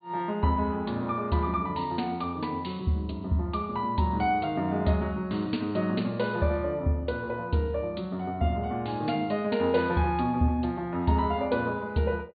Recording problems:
low-pass filter; nothing above 4.6 kHz

